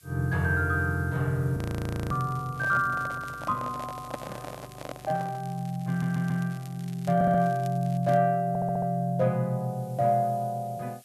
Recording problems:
background hiss; slope +4 dB per octave, SNR 29 dB
audio freezing; at 1.5 s for 0.5 s
crackle; from 2 to 3.5 s and from 3.5 to 8 s; loose cable, SNR 25 dB
microphone handling noise; from 2.5 to 5.5 s; peak -2 dB vs average level
audio stuttering; at 6 s, at 7 s and at 8.5 s

